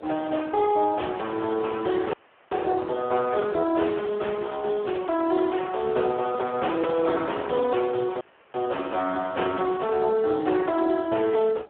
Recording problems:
telephone audio; 280 Hz to 3.1 kHz, Speex
wind noise; below 700 Hz, SNR 24 dB
dropout; at 2 s and at 8 s

